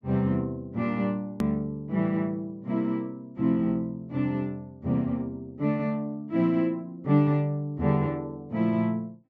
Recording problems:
treble cut off; nothing above 8 kHz
edit click; at 1.5 s

